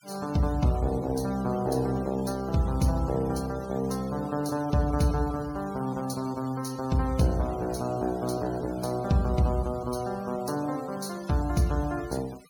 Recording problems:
denoising artefacts; signal-to-artefact ratio 20 dB

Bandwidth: 17.5 kHz